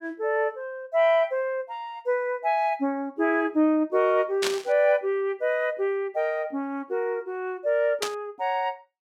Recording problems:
static burst; at 4.5 s and at 8 s; peak +2 dB vs average level

